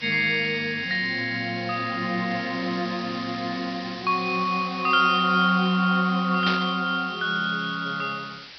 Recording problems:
low-pass filter; nothing above 5.5 kHz
hiss; SNR 15 dB
static burst; at 6.5 s; peak 0 dB vs average level

